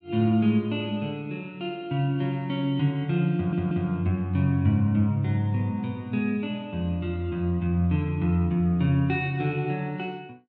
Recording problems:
audio stuttering; at 3.5 s

